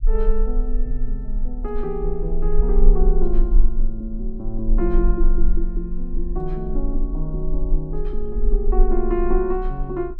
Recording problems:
rumble; below 34 Hz, strongest tone 22 Hz, SNR -2 dB

